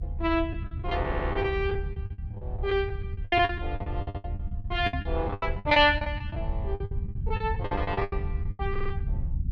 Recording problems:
low-frequency rumble; below 90 Hz, SNR 5 dB
lost packets; 19% of the sound replaced, filled with the last packet
audio stuttering; at 1 s, at 4 s and at 8.5 s
microphone thump; at 5 s; peak -4 dB vs average level

